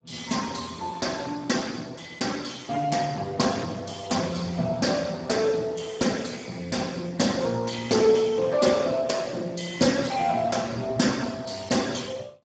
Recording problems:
codec artefacts; Speex, log-spectral distance 6 dB, nothing above 7.6 kHz

